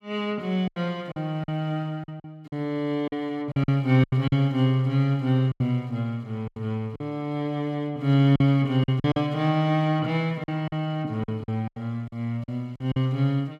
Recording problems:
packet loss; 9% of the sound replaced, filled with silence

